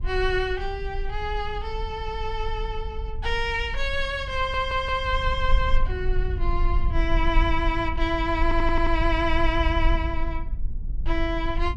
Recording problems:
rumble; below 48 Hz, strongest tone 18 Hz, SNR 3 dB
stutter; at 4.5 s and at 8.5 s

